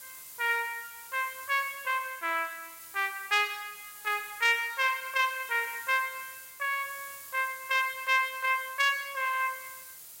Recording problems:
background hiss; slope +1 dB per octave, SNR 15 dB

